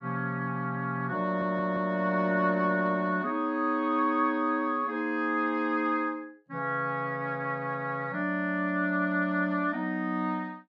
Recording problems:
stutter; at 1.5 s

